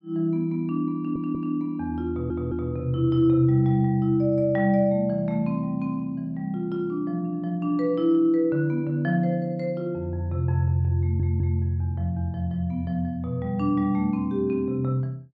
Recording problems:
stutter; at 1 s, at 2 s and at 11 s

